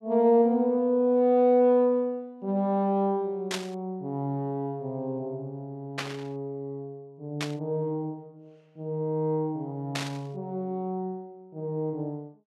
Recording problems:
burst of static; 4 times, first at 3.5 s; peak 0 dB vs average level

